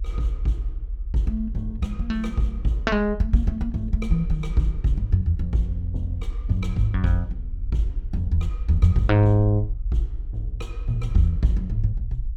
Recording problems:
low-frequency rumble; below 50 Hz, SNR 8 dB

